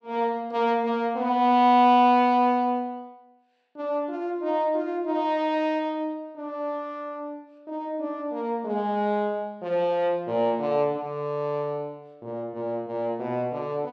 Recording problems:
none

